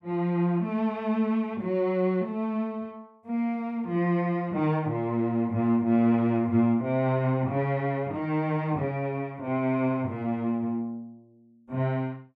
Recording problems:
none

